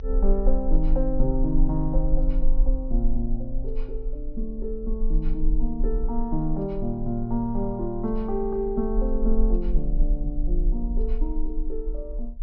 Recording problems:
treble cut off; nothing above 6.3 kHz
low-frequency rumble; below 36 Hz, strongest tone 20 Hz, SNR 0 dB

